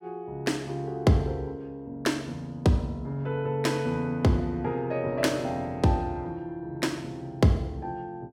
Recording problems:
none

